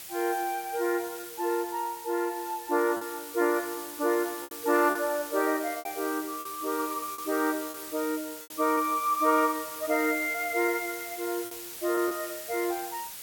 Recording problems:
hiss; slope +1 dB per octave, SNR 10 dB
lost packets; 5% of the sound replaced, filled with repeated pitch periods

